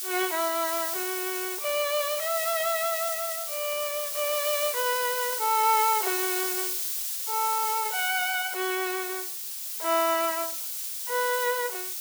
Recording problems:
hiss; slope +5 dB per octave, SNR 1 dB

